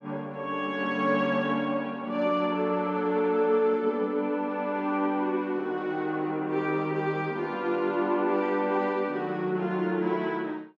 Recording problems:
none

